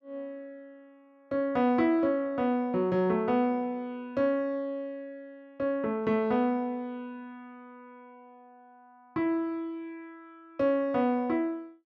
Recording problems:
none

